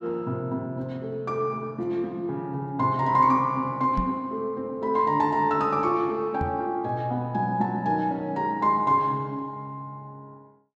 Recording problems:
microphone bump; at 4 s and at 6.5 s; peak 0 dB vs average level

